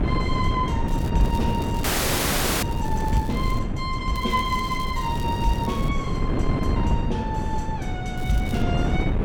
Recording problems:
wind on the microphone; below 220 Hz, SNR -2 dB
crackling; 4 times, first at 1 s; loose cable, SNR 17 dB
audio freezing; at 2 s for 1 s

